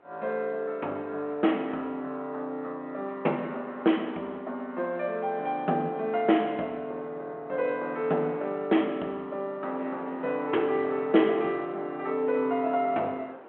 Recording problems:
phone line; 220 Hz to 3.3 kHz, G.726
wind noise; below 1 kHz, SNR 23 dB

